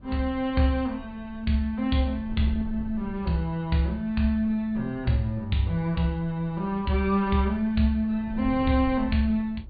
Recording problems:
low-pass filter; nothing above 4.6 kHz
wind noise; below 96 Hz, SNR 17 dB

